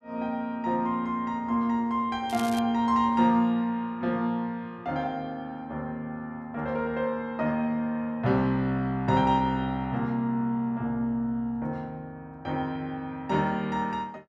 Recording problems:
crackle; at 2.5 s; loose cable, SNR 15 dB

